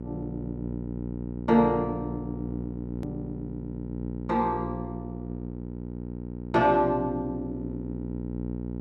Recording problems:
hum; 60 Hz, harmonics up to 900 Hz, SNR 7 dB
click at an edit; at 3 s

